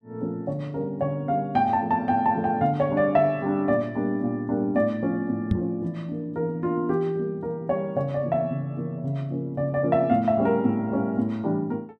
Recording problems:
microphone thump; at 5.5 s; peak +5 dB vs average level

